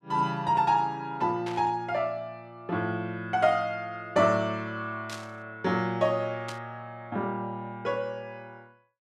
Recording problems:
static burst; at 1.5 s, at 5 s and at 6.5 s; peak -6 dB vs average level

